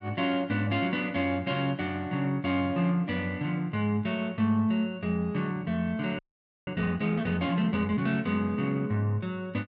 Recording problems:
audio freezing; at 6 s

